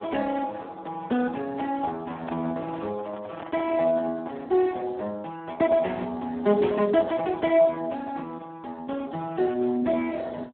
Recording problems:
phone line; 190 Hz to 3.5 kHz, Speex
handling noise; from 2 to 4.5 s; peak -8 dB vs average level

